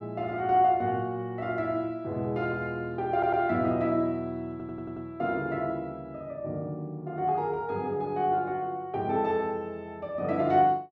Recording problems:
stutter; at 3 s and at 4.5 s

